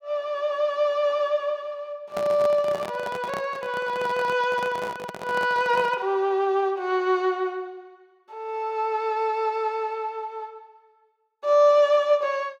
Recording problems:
microphone handling noise; from 2 to 6 s; peak -5 dB vs average level

